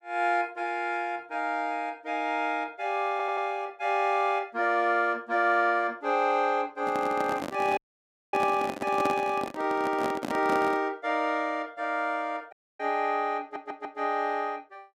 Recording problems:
stutter; at 3 s and at 13 s
microphone handling noise; from 7 to 11 s; peak +1 dB vs average level
dropout; at 8 s for 0.5 s and at 13 s

